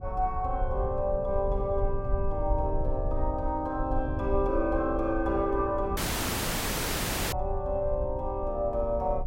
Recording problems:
rumble; below 68 Hz, SNR 6 dB
dropout; at 6 s for 1.5 s

